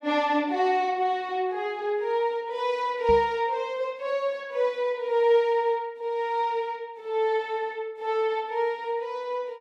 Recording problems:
knock on the microphone; at 3 s; peak -4 dB vs average level

